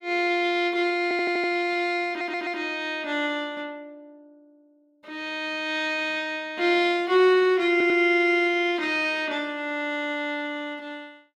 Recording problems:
stutter; at 1 s, at 2 s and at 7.5 s

